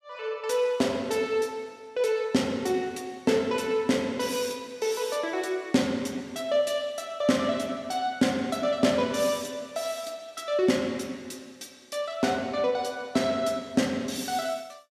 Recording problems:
none

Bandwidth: 14.5 kHz